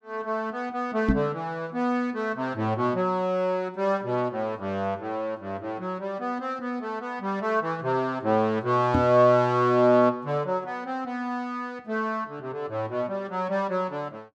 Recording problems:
knock on the microphone; at 1 s and at 9 s; peak +7 dB vs average level

